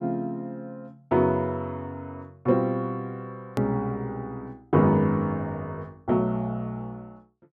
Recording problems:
edit click; at 3.5 s

